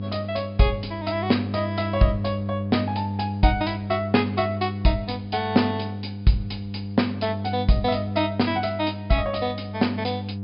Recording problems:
treble cut off; nothing above 5.5 kHz
hum; 50 Hz, harmonics up to 500 Hz, SNR 6 dB

